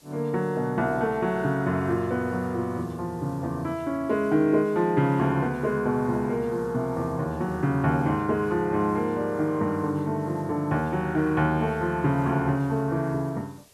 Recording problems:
hiss; SNR 29 dB

